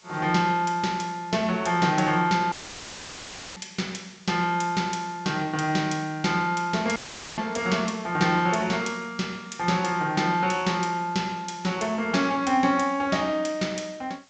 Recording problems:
treble cut off; nothing above 8 kHz
hiss; slope +1 dB per octave, SNR 29 dB
dropout; at 2.5 s for 1 s and at 7 s; filled with static

